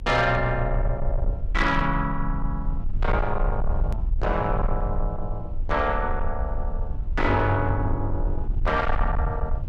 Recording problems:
distortion; soft clipping, signal-to-distortion ratio 11 dB
low-frequency rumble; below 56 Hz, SNR 4 dB
edit click; at 4 s

